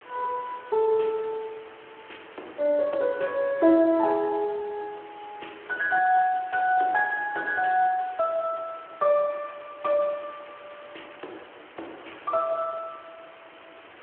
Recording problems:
phone line; 280 Hz to 3.3 kHz, Speex
hiss; SNR 22 dB

